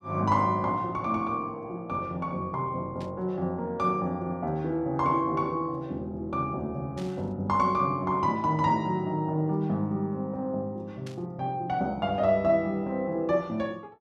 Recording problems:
burst of static; at 3 s, at 7 s and at 11 s; peak -13 dB vs average level

